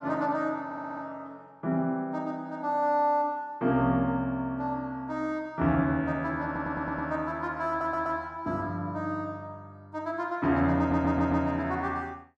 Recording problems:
stutter; 4 times, first at 0.5 s

